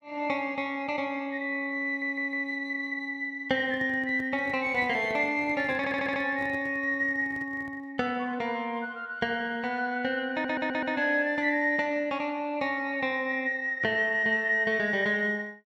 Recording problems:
audio stuttering; at 2 s, at 6 s and at 10 s
handling noise; from 3.5 to 8 s; peak -12 dB vs average level

